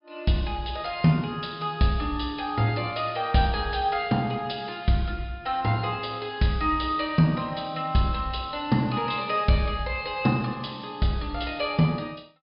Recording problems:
treble cut off; nothing above 5.5 kHz

